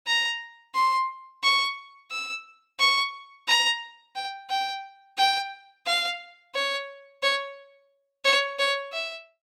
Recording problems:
none

